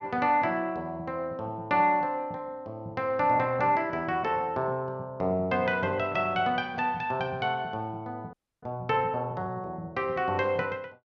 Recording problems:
audio freezing; at 8.5 s

